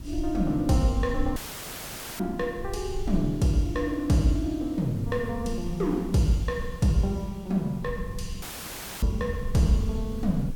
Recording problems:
hiss; slope -3 dB per octave, SNR 26 dB
rumble; below 68 Hz, SNR 11 dB
audio cutting out; at 1.5 s for 1 s and at 8.5 s for 0.5 s; filled with static

